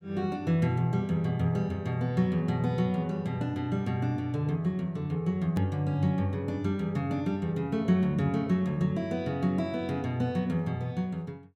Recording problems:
edit click; at 5.5 s

